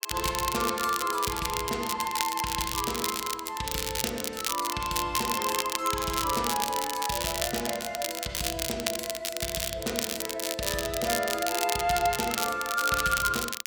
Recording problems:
crackling; vinyl, SNR 2 dB

